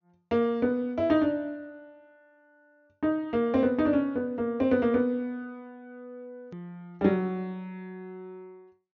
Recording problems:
low-pass filter; nothing above 6.9 kHz
hard cut with a click; at 6.5 s

